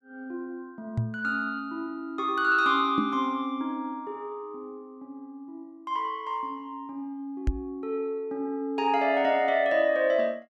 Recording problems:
knock on the microphone; at 1 s, at 3 s and at 7.5 s; peak +4 dB vs average level

